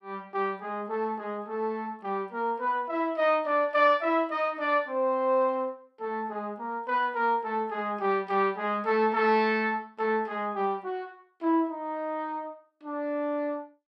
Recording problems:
none

